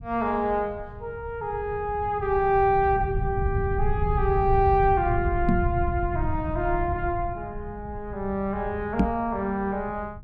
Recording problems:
low-frequency rumble; below 110 Hz, SNR 6 dB
microphone bump; at 5.5 s and at 9 s; peak +7 dB vs average level

